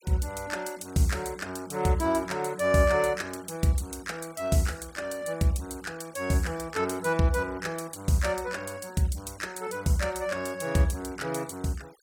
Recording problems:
noise reduction artefacts; signal-to-artefact ratio 23 dB

